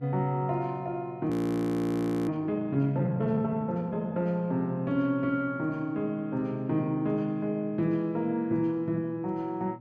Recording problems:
hum; 60 Hz, harmonics up to 840 Hz, SNR 23 dB
audio freezing; at 1.5 s for 1 s

